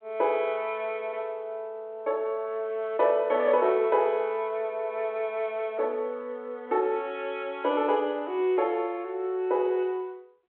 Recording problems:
telephone audio; 260 Hz to 3.8 kHz, G.726

